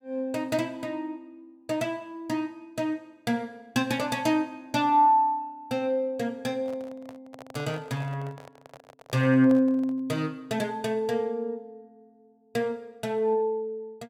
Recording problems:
microphone handling noise; from 6.5 to 10 s; peak -10 dB vs average level

